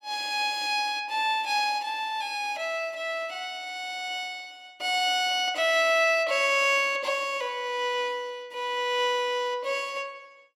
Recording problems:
none

